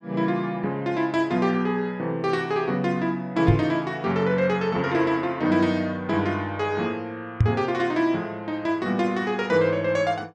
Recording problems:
microphone bump; at 3.5 s and at 7.5 s; peak +8 dB vs average level

